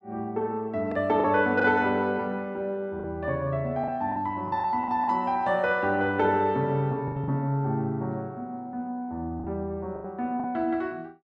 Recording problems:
packet loss; 6% of the sound replaced, filled with the last packet

